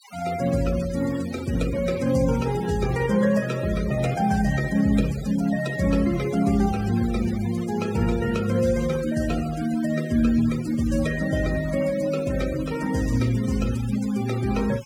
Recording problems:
denoising artefacts; signal-to-artefact ratio 16 dB

